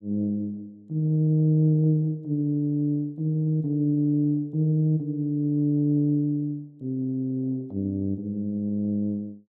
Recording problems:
none

